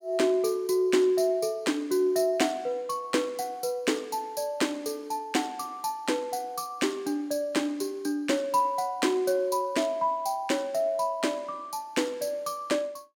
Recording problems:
none

